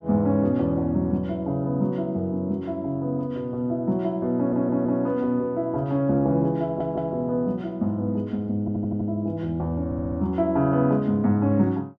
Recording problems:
audio stuttering; 4 times, first at 4.5 s

